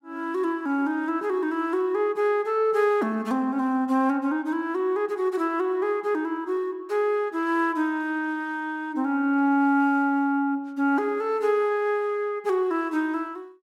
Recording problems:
none

